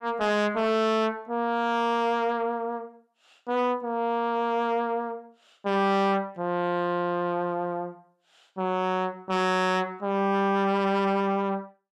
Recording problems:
distorted audio; soft clipping, signal-to-distortion ratio 7 dB

